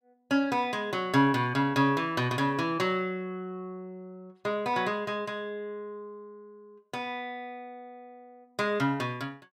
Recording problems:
none

